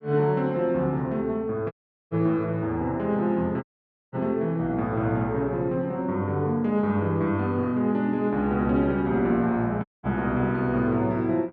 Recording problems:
audio cutting out; at 1.5 s, at 3.5 s and at 10 s

